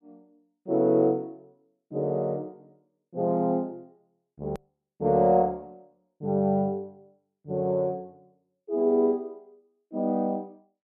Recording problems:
edit click; at 4.5 s

